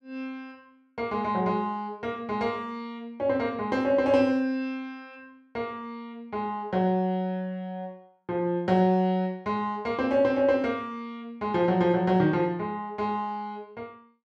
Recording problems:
none

